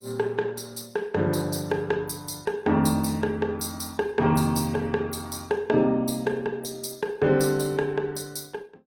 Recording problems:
codec artefacts; Opus, log-spectral distance 5 dB, nothing above 17 kHz

